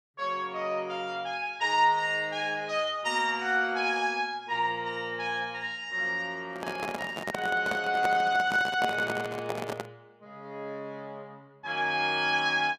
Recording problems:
microphone handling noise; from 6.5 to 10 s; peak 0 dB vs average level

